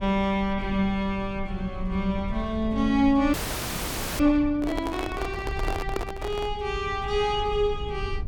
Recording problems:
low-frequency rumble; below 80 Hz, SNR 11 dB
audio freezing; at 3.5 s for 1 s
microphone handling noise; from 4.5 to 6.5 s; peak 0 dB vs average level

